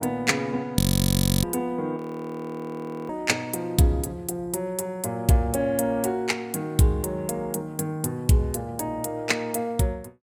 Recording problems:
audio freezing; at 1 s for 0.5 s and at 2 s for 1 s

